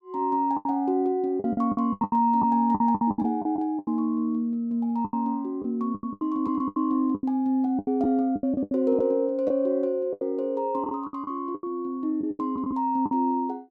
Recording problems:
packet loss; 14% of the sound replaced, filled with the last packet

